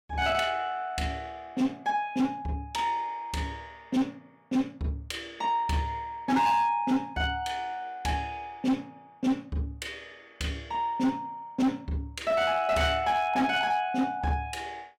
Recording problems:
distorted audio; hard clipping, signal-to-distortion ratio 12 dB

